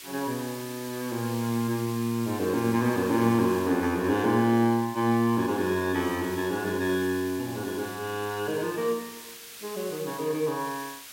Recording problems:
background hiss; slope +2 dB per octave, SNR 15 dB

